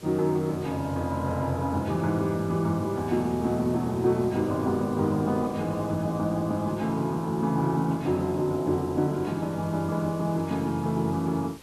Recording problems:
hiss; slope -2 dB per octave, SNR 22 dB

